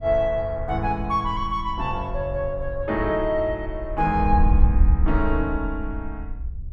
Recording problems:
wind noise; below 68 Hz, SNR 3 dB

